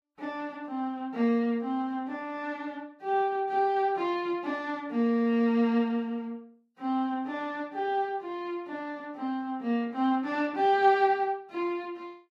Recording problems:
lossy compression; Vorbis, log-spectral distance 2 dB

